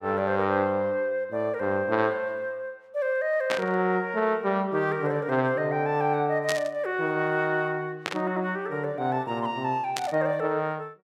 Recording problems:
burst of static; 4 times, first at 3.5 s; peak +2 dB vs average level

